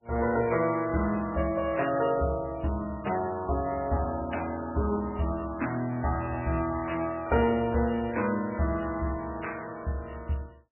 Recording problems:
lossy codec; MP3, log-spectral distance 6 dB, nothing above 2.4 kHz

